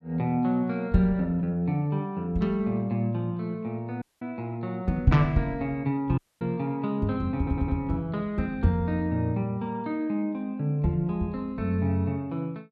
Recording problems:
audio cutting out; at 4 s and at 6 s
audio stuttering; at 7.5 s

